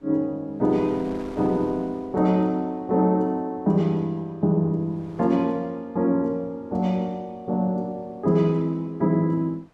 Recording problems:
wind noise; below 1 kHz, SNR 25 dB

